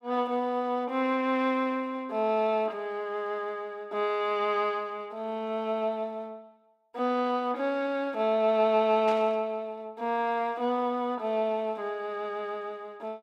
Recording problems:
burst of static; at 9 s; peak -8 dB vs average level

